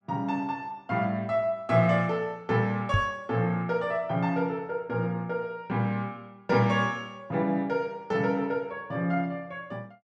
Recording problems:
knock on the microphone; at 3 s; peak +6 dB vs average level

